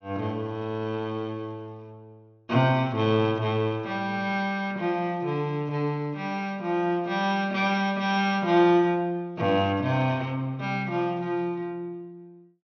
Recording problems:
low-pass filter; nothing above 6.5 kHz

